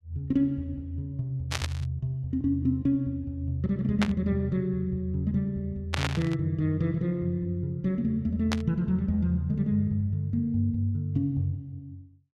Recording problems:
burst of static; 4 times, first at 1.5 s; peak +3 dB vs average level

